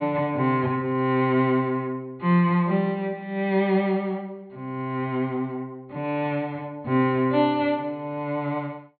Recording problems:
treble missing; nothing above 4.5 kHz

